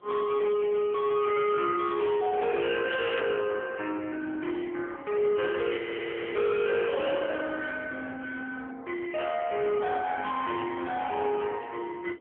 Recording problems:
phone line; 280 Hz to 3 kHz, AMR-NB
distorted audio; hard clipping, signal-to-distortion ratio 12 dB
wind noise; below 930 Hz, SNR 22 dB
crackle; at 3 s; loose cable, SNR 10 dB
audio freezing; at 6 s for 0.5 s

